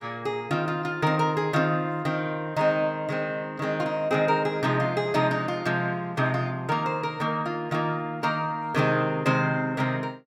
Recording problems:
none

